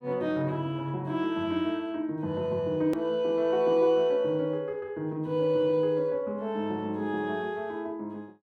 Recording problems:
click at an edit; at 3 s

